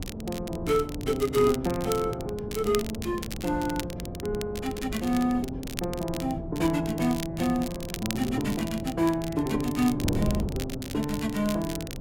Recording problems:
wind on the microphone; below 300 Hz, SNR 8 dB
crackle; vinyl, SNR 12 dB

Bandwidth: 16.5 kHz